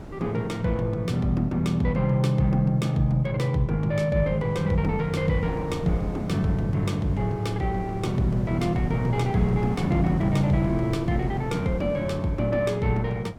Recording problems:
wind on the microphone; below 330 Hz, SNR 12 dB

